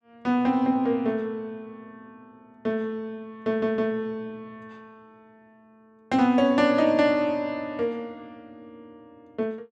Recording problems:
audio stuttering; at 3.5 s

